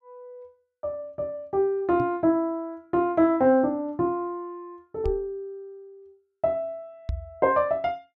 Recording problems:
knock on the microphone; at 2 s, at 5 s and at 7 s; peak -1 dB vs average level

